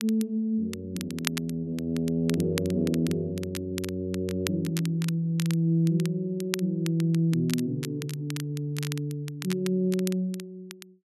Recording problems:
crackle; vinyl, SNR 12 dB

